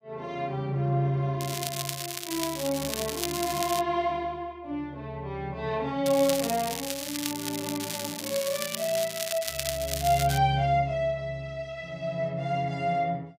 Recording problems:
crackling; from 1.5 to 4 s and from 6 to 10 s; loose cable, SNR 4 dB

